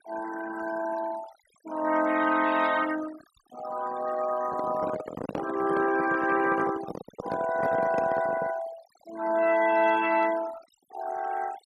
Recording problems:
denoising artefacts; signal-to-artefact ratio 14 dB
microphone handling noise; from 4.5 to 8.5 s; peak -1 dB vs average level

